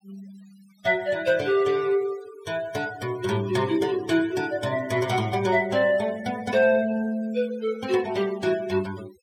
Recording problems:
noise reduction artefacts; signal-to-artefact ratio 19 dB

